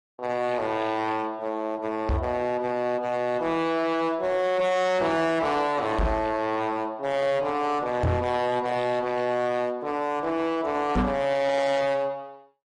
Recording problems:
lossy codec; AAC, log-spectral distance 2 dB, nothing above 10.7 kHz
distortion; hard clipping, signal-to-distortion ratio 8 dB
knock on the microphone; 4 times, first at 2 s; peak +4 dB vs average level

